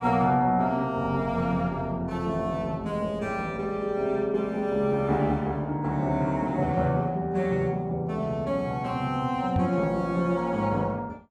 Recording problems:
microphone bump; at 9.5 s; peak +3 dB vs average level

